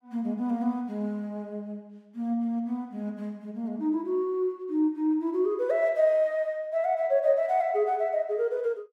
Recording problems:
none

